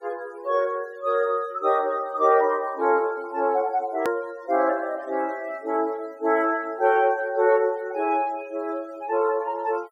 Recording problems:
noise reduction artefacts; signal-to-artefact ratio 26 dB
edit click; at 4 s

